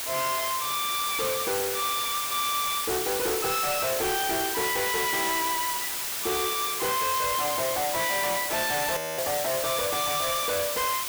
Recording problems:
distorted audio; soft clipping, signal-to-distortion ratio 6 dB
hiss; slope +1 dB per octave, SNR 0 dB
audio freezing; at 9 s

